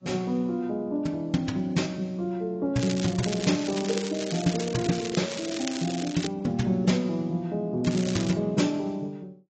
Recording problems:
lossy codec; AAC, log-spectral distance 6 dB, nothing above 7.6 kHz
crackling; from 3 to 6.5 s and at 8 s; loose cable, SNR 9 dB

